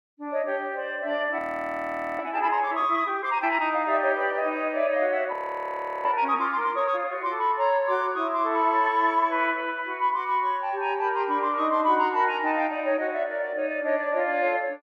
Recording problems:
audio freezing; at 1.5 s for 1 s and at 5.5 s for 0.5 s

